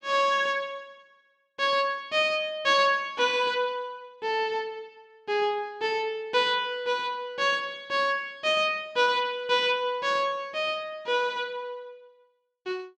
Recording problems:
none

